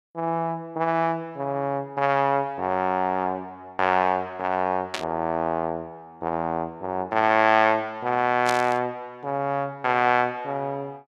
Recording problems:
burst of static; at 5 s and at 8.5 s; peak 0 dB vs average level

